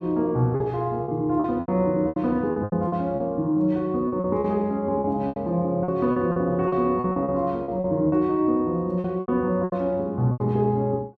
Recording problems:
lost packets; 13% of the sound replaced, filled with repeated pitch periods

